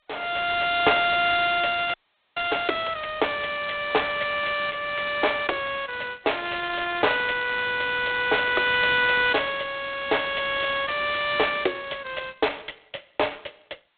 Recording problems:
phone line; 320 Hz to 3.9 kHz, G.726
audio freezing; at 2 s

